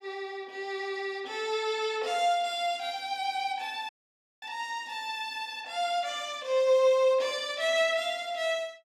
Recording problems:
dropout; at 4 s for 0.5 s

